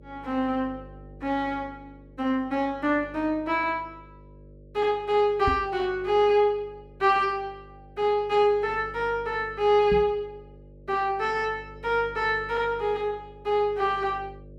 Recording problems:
electrical hum; 50 Hz, harmonics up to 600 Hz, SNR 23 dB
knock on the microphone; at 5.5 s and at 10 s; peak 0 dB vs average level

